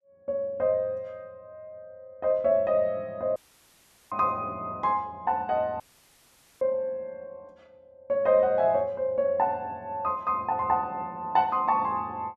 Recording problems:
audio cutting out; at 3.5 s for 1 s and at 6 s for 1 s

